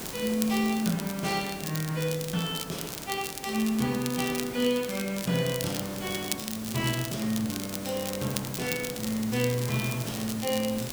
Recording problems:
hiss; slope -4 dB per octave, SNR 10 dB
crackle; vinyl, SNR 7 dB

